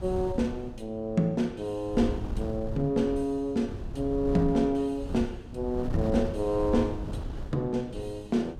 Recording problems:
wind on the microphone; below 140 Hz, SNR 8 dB

